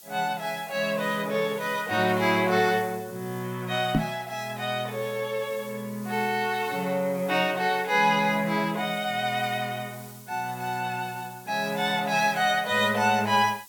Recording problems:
hiss; SNR 20 dB
knock on the microphone; at 4 s; peak +5 dB vs average level

